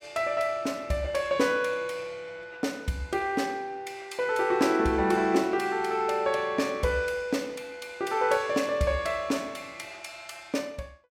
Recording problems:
none

